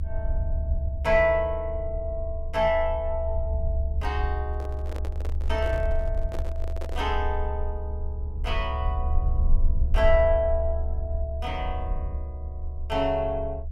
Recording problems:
low-frequency rumble; below 70 Hz, strongest tone 22 Hz, SNR 2 dB
microphone handling noise; from 4.5 to 7 s; peak -6 dB vs average level

